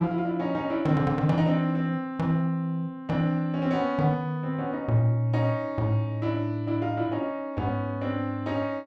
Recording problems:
none

